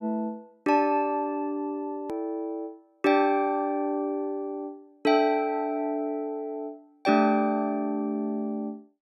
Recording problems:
hard cut with a click; at 2 s

